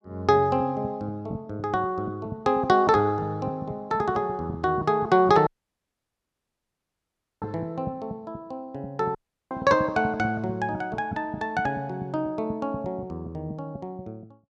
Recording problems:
audio cutting out; at 5.5 s for 2 s and at 9 s

